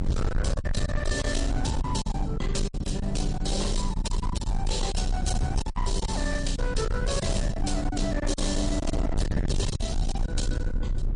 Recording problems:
codec artefacts; MP3, log-spectral distance 2 dB
distortion; hard clipping, signal-to-distortion ratio 6 dB
hum; 60 Hz, harmonics up to 660 Hz, SNR 19 dB
rumble; below 92 Hz, SNR 0 dB
lost packets; 9% of the sound replaced, filled with silence

